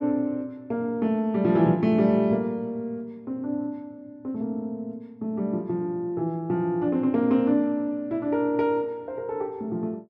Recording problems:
none

